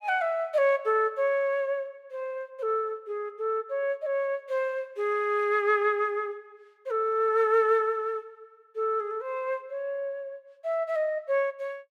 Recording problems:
none

